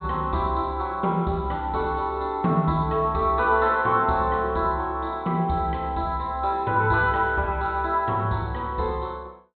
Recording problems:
low-pass filter; nothing above 4.1 kHz

